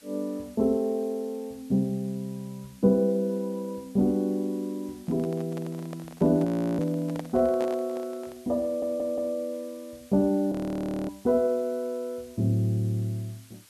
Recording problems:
hiss; slope +1 dB per octave, SNR 26 dB
handling noise; from 5 to 8.5 s; peak -5 dB vs average level
audio freezing; at 6.5 s and at 11 s for 0.5 s
audio stuttering; at 8.5 s

